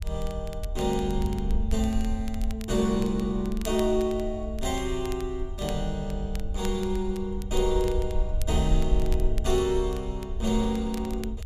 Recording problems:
low-frequency rumble; below 58 Hz, SNR 4 dB
crackle; vinyl, SNR 19 dB

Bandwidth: 14.5 kHz